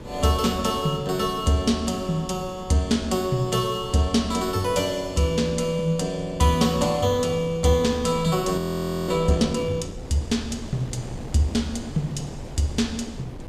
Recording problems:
wind on the microphone; below 400 Hz, SNR 15 dB
frozen audio; at 8.5 s for 0.5 s

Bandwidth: 15 kHz